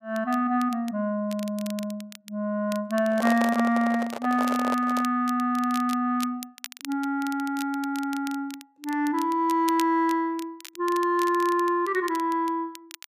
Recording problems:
crackling; vinyl, SNR 18 dB
microphone handling noise; from 3 to 5 s; peak 0 dB vs average level

